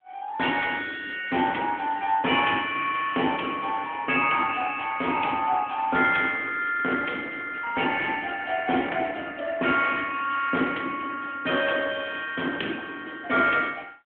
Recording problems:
telephone audio; 220 Hz to 3.4 kHz, AMR-NB

